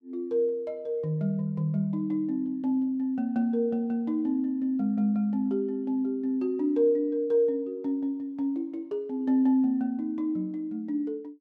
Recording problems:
none

